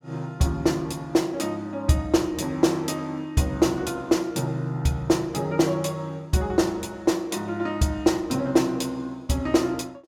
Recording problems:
none

